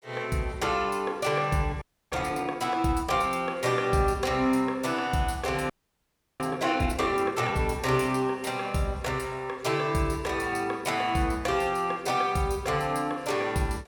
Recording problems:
frozen audio; at 2 s and at 5.5 s for 0.5 s

